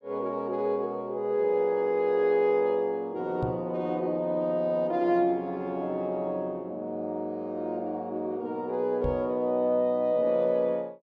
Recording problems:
microphone thump; at 3.5 s and at 9 s; peak 0 dB vs average level

